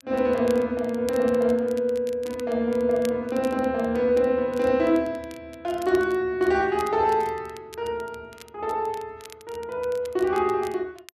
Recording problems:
crackling; vinyl, SNR 23 dB

